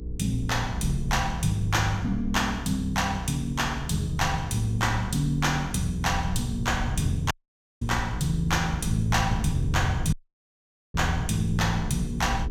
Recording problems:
hum; 60 Hz, harmonics up to 480 Hz, SNR 10 dB
rumble; below 110 Hz, SNR 9 dB
dropout; at 7.5 s for 0.5 s and at 10 s for 1 s

